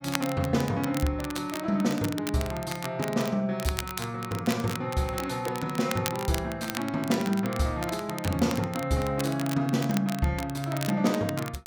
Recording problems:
crackling; vinyl, SNR 10 dB

